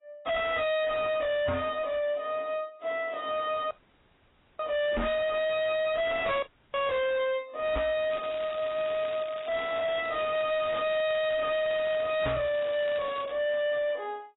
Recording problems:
lossy compression; AAC, log-spectral distance 6 dB, nothing above 3.7 kHz
distorted audio; hard clipping, uneven, signal-to-distortion ratio 5 dB
microphone thump; 4 times, first at 1.5 s; peak +3 dB vs average level
audio cutting out; at 3.5 s for 1 s and at 6.5 s
crackle; from 8 to 13 s; loose cable, SNR 16 dB

